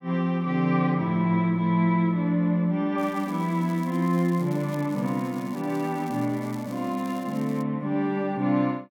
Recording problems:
crackle; from 3 to 7 s and at 7 s; loose cable, SNR 24 dB

